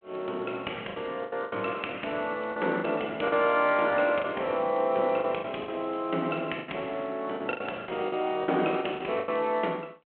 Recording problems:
phone line; 220 Hz to 3.3 kHz, G.726
lost packets; 10% of the sound replaced, filled with the last packet

